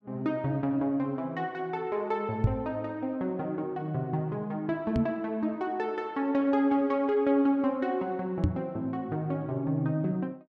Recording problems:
microphone bump; at 2.5 s, at 5 s and at 8.5 s; peak +8 dB vs average level

